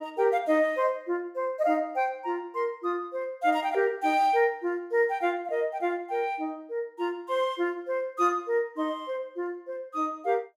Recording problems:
none

